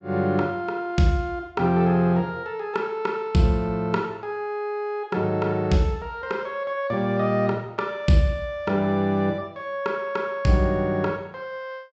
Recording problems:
treble missing; nothing above 8 kHz

